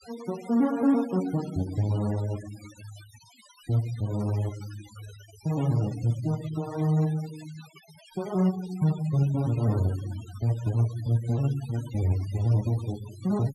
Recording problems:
noise reduction artefacts; signal-to-artefact ratio 18 dB

